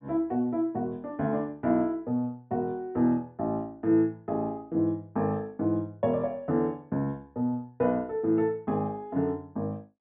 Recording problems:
treble cut off; nothing above 4 kHz

